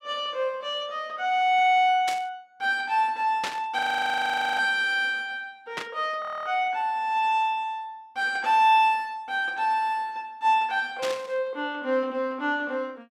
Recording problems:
static burst; 4 times, first at 2 s; peak -1 dB vs average level
frozen audio; at 4 s for 1 s and at 6 s

